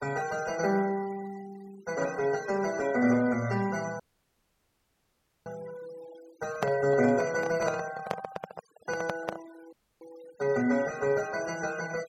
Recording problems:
noise reduction artefacts; signal-to-artefact ratio 18 dB
dropout; at 4 s for 1.5 s and at 9.5 s
handling noise; from 6.5 to 9.5 s; peak +2 dB vs average level

